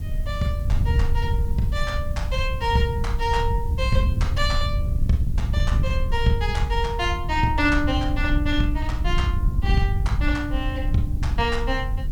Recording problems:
hiss; slope 0 dB per octave, SNR 26 dB
wind noise; below 88 Hz, SNR -1 dB

